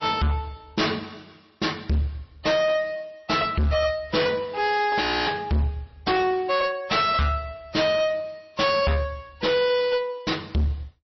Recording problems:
codec artefacts; MP3, log-spectral distance 3 dB, nothing above 5.7 kHz
distortion; hard clipping, uneven, signal-to-distortion ratio 6 dB
frozen audio; at 5 s

